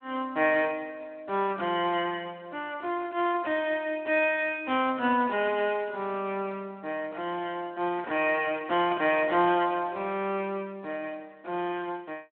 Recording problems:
telephone audio; 190 Hz to 3.3 kHz, Speex

